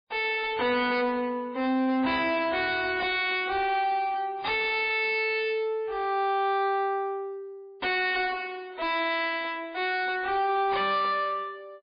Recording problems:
lossy compression; MP3, log-spectral distance 3 dB, nothing above 4.4 kHz
distortion; soft clipping, signal-to-distortion ratio 5 dB

